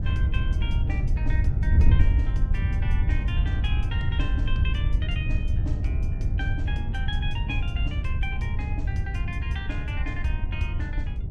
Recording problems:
wind on the microphone; below 92 Hz, SNR -9 dB

